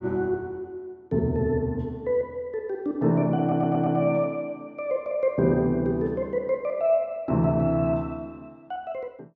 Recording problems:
stutter; at 3.5 s

